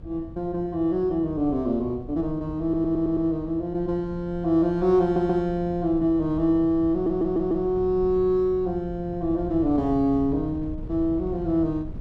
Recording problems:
wind on the microphone; below 140 Hz, SNR 15 dB
stutter; at 2.5 s, at 5 s and at 7 s

